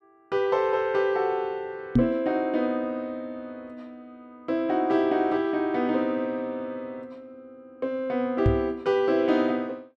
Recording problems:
knock on the microphone; at 2 s and at 8.5 s; peak +9 dB vs average level

